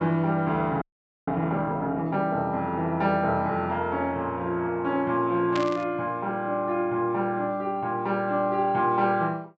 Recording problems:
low-pass filter; nothing above 7.9 kHz
frozen audio; at 1 s
burst of static; at 5.5 s; peak -4 dB vs average level

